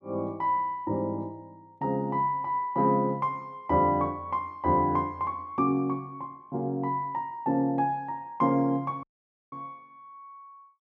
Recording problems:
audio cutting out; at 9 s

